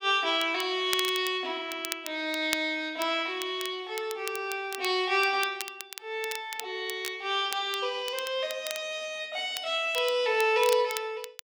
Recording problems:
crackle; vinyl, SNR 11 dB

